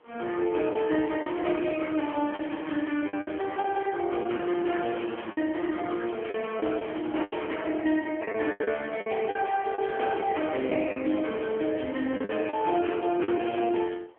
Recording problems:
phone line; 260 Hz to 3.3 kHz, AMR-NB
wind on the microphone; below 1.2 kHz, SNR 24 dB
lost packets; 7% of the sound replaced, filled with the last packet

